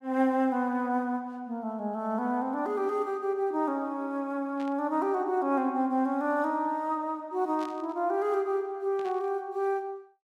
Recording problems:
burst of static; at 4.5 s, at 7.5 s and at 9 s; peak -13 dB vs average level

